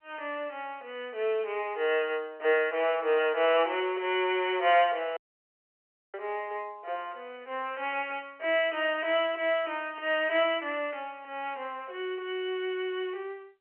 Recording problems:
telephone audio; 340 Hz to 3.1 kHz, G.711
audio cutting out; at 5 s for 1 s

